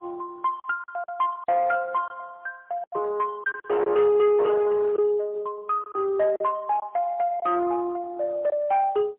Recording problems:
phone line; 280 Hz to 2.9 kHz, AMR-NB, then MP3
distorted audio; soft clipping, signal-to-distortion ratio 10 dB
packet loss; 6% of the sound replaced, filled with silence

